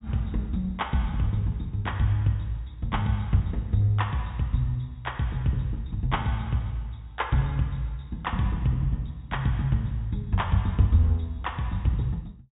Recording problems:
low-pass filter; nothing above 4 kHz

